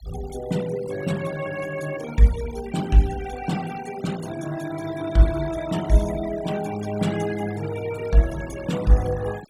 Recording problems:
noise reduction artefacts; signal-to-artefact ratio 16 dB

